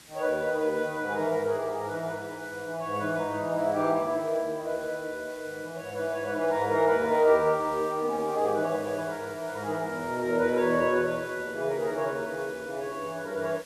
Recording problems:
background hiss; slope 0 dB per octave, SNR 21 dB

